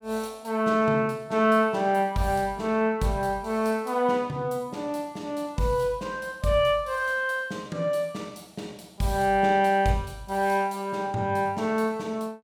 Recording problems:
none

